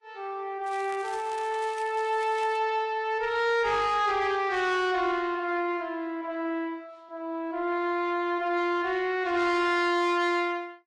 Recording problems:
lossy codec; Vorbis, then Vorbis, log-spectral distance 2 dB
distortion; soft clipping, signal-to-distortion ratio 11 dB
crackle; from 0.5 to 2.5 s; loose cable, SNR 21 dB

